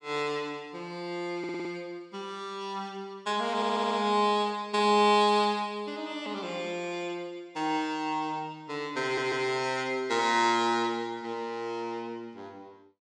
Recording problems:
audio stuttering; at 1.5 s, at 3.5 s and at 9 s

